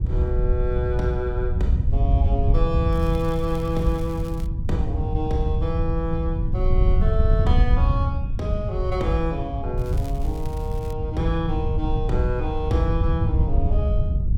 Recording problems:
low-frequency rumble; below 120 Hz, SNR 5 dB
wind on the microphone; below 88 Hz, SNR -2 dB
crackle; from 3 to 4.5 s and from 10 to 11 s; loose cable, SNR 21 dB

